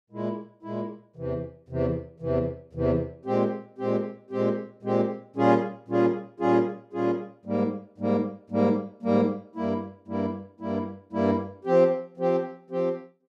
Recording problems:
none

